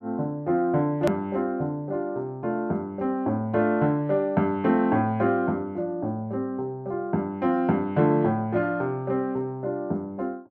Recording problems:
hard cut with a click; at 1 s

